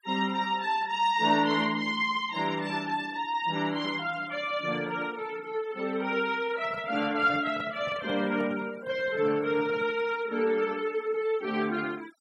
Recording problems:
noise reduction artefacts; signal-to-artefact ratio 21 dB
microphone handling noise; from 6.5 to 10 s; peak -10 dB vs average level

